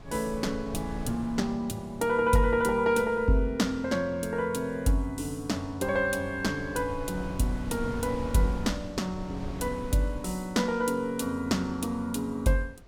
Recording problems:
wind on the microphone; below 190 Hz, SNR 14 dB

